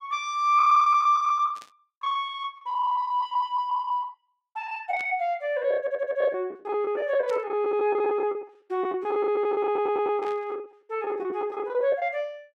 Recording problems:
lost packets; 15% of the sound replaced, filled with the last packet
burst of static; 4 times, first at 1.5 s; peak -12 dB vs average level
stutter; at 6 s and at 9.5 s

